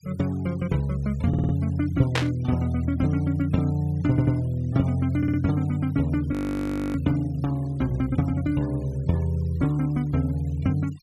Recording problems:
denoising artefacts; signal-to-artefact ratio 26 dB
stutter; at 1.5 s, at 4 s and at 5 s
static burst; at 2 s; peak +3 dB vs average level
audio freezing; at 6.5 s for 0.5 s

